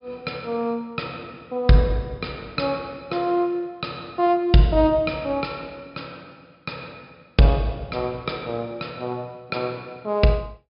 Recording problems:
low-pass filter; nothing above 5.5 kHz

